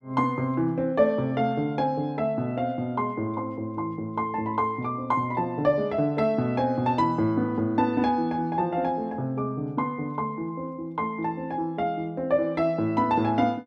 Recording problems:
none

